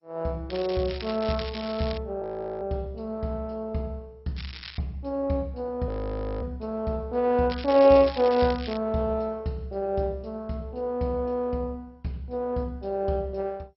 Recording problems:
lossy codec; MP2, log-spectral distance 4 dB, nothing above 5.5 kHz
crackle; until 2 s, at 4.5 s and from 7.5 to 9 s; loose cable, SNR 13 dB
frozen audio; at 2 s and at 6 s for 0.5 s

